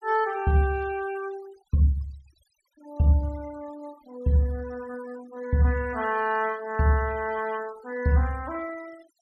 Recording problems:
noise reduction artefacts; signal-to-artefact ratio 23 dB

